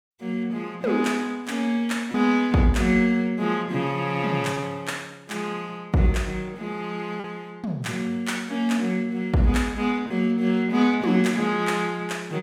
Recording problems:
lost packets; 1% of the sound replaced, filled with repeated pitch periods

